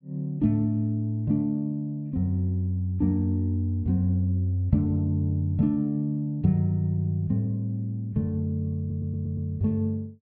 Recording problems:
stutter; at 9 s

